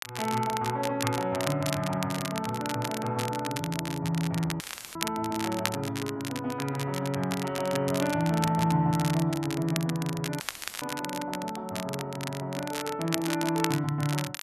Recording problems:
crackling; vinyl, SNR 7 dB
audio cutting out; at 4.5 s and at 10 s; filled with static

